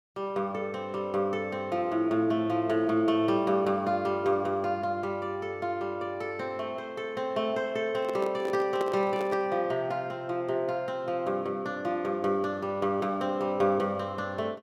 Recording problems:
handling noise; from 8 to 9.5 s; peak -1 dB vs average level

